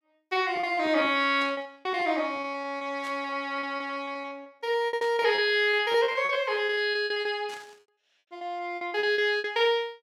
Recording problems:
packet loss; 17% of the sound replaced, filled with repeated pitch periods
burst of static; 4 times, first at 1.5 s; peak -12 dB vs average level

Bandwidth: 16.5 kHz